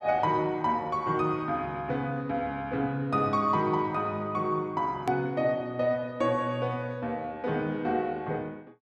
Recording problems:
hard cut with a click; at 5 s

